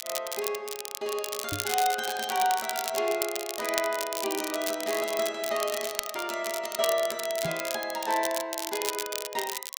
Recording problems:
crackle; vinyl, SNR 4 dB
knock on the microphone; at 1.5 s and at 7.5 s; peak -2 dB vs average level

